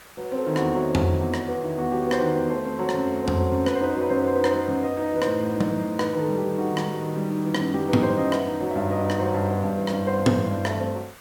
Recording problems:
background hiss; SNR 22 dB

